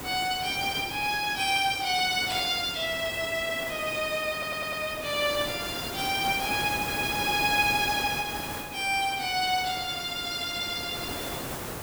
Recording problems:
background hiss; slope -5 dB per octave, SNR 9 dB
stutter; at 4.5 s

